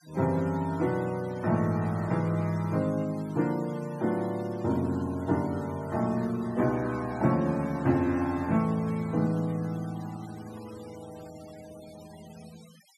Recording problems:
denoising artefacts; signal-to-artefact ratio 23 dB

